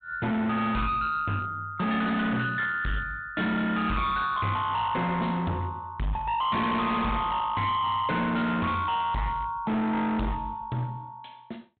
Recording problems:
treble missing; nothing above 4 kHz
distortion; hard clipping, uneven, signal-to-distortion ratio 7 dB

